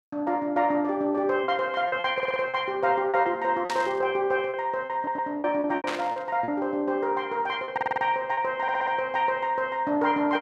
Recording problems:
lost packets; 8% of the sound replaced, filled with repeated pitch periods
stutter; 4 times, first at 2 s
burst of static; at 3.5 s and at 6 s; peak -2 dB vs average level

